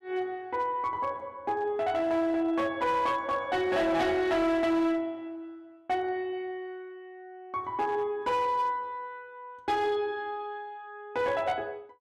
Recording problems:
distortion; hard clipping, signal-to-distortion ratio 11 dB

